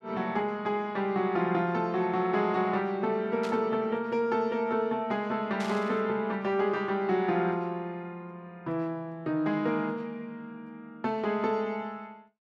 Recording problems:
static burst; at 3.5 s and at 5.5 s; peak -8 dB vs average level

